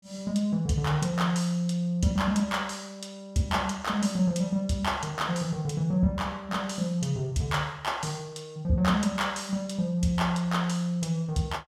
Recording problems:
none

